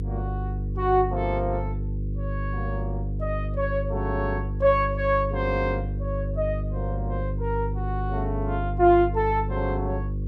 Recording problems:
hum; 50 Hz, harmonics up to 500 Hz, SNR 3 dB

